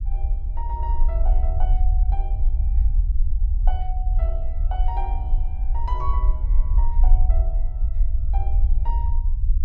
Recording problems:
low-frequency rumble; below 52 Hz, SNR -13 dB

